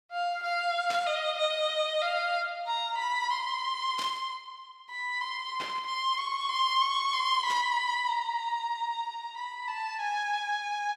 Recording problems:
burst of static; 4 times, first at 1 s; peak -4 dB vs average level

